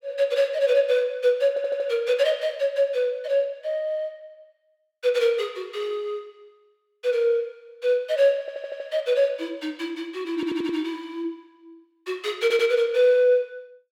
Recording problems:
audio stuttering; 4 times, first at 1.5 s

